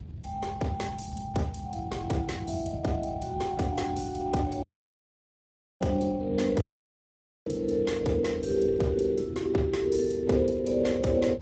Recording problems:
codec artefacts; Opus, then Speex, log-spectral distance 3 dB, nothing above 8 kHz
wind noise; below 150 Hz, SNR 13 dB
audio cutting out; at 4.5 s for 1 s and at 6.5 s for 1 s

